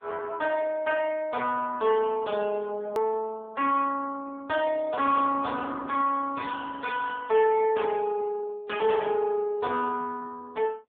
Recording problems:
telephone audio; 170 Hz to 3.4 kHz, AMR-NB
distortion; soft clipping, signal-to-distortion ratio 12 dB
click at an edit; at 3 s

